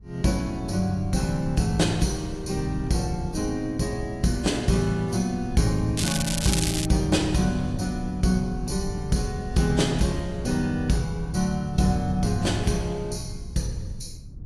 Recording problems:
codec artefacts; AAC, log-spectral distance 3 dB, nothing above 11 kHz
wind noise; below 130 Hz, SNR 11 dB
crackle; at 6 s; loose cable, SNR 3 dB

